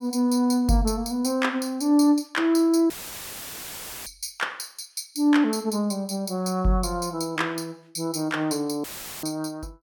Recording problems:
dropout; at 3 s for 1 s and at 9 s; filled with static

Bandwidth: 17.5 kHz